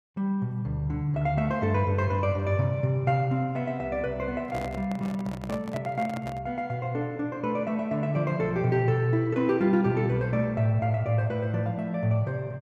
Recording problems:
microphone handling noise; from 4.5 to 6.5 s; peak -6 dB vs average level

